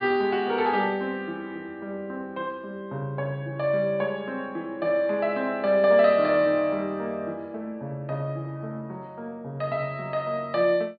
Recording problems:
treble missing; nothing above 4.8 kHz

